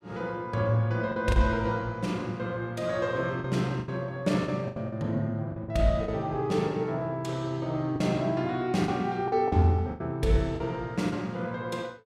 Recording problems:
packet loss; 7% of the sound replaced, filled with the last packet

